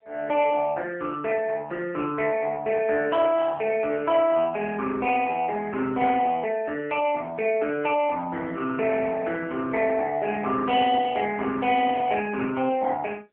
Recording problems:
phone line; 320 Hz to 3.2 kHz, AMR-NB

